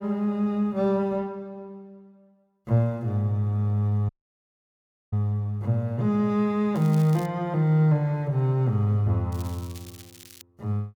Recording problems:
dropout; at 4 s for 1 s
crackling; at 7 s and from 9.5 to 10 s; loose cable, SNR 22 dB

